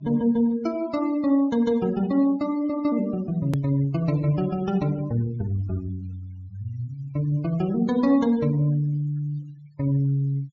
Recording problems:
treble missing; nothing above 7.1 kHz
denoising artefacts; signal-to-artefact ratio 23 dB
edit click; at 3.5 s

